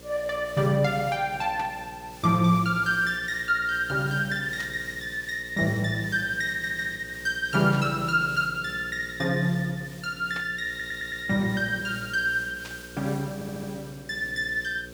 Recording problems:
hum; 60 Hz, harmonics up to 540 Hz, SNR 19 dB
hiss; slope +1 dB per octave, SNR 20 dB
burst of static; 5 times, first at 1.5 s; peak -8 dB vs average level
stutter; at 6.5 s, at 11 s and at 13 s

